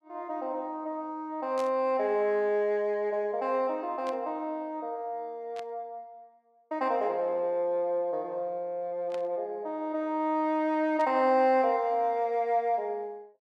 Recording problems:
static burst; 5 times, first at 1.5 s; peak -11 dB vs average level

